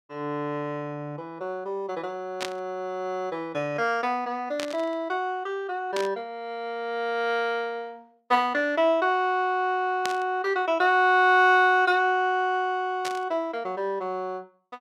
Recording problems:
burst of static; 5 times, first at 2.5 s; peak -2 dB vs average level

